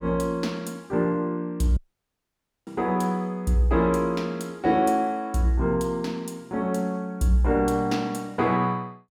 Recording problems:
dropout; at 2 s for 1 s

